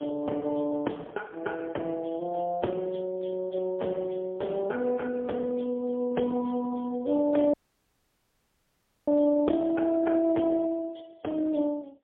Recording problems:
phone line; 190 Hz to 3.3 kHz, AMR-NB, then MP3
audio cutting out; at 7.5 s for 1.5 s

